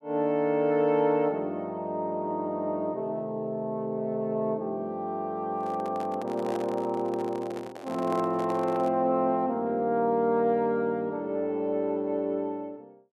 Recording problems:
handling noise; from 5.5 to 9 s; peak -6 dB vs average level

